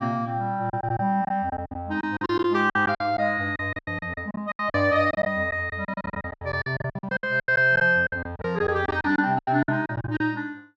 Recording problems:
packet loss; 18% of the sound replaced, filled with silence

